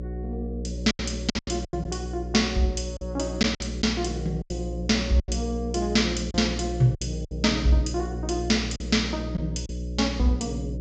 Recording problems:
treble missing; nothing above 8 kHz
hum; 60 Hz, harmonics up to 600 Hz, SNR 7 dB
packet loss; 8% of the sound replaced, filled with silence

